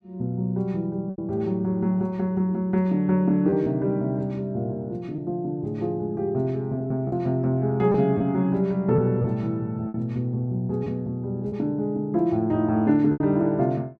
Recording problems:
lost packets; 4% of the sound replaced, filled with repeated pitch periods

